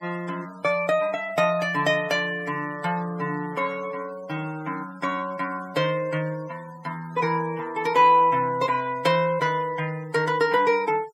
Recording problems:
noise reduction artefacts; signal-to-artefact ratio 22 dB

